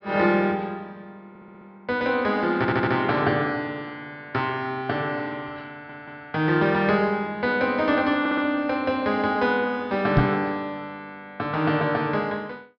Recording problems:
low-pass filter; nothing above 5.5 kHz
stutter; 4 times, first at 1.5 s
knock on the microphone; at 10 s; peak +8 dB vs average level

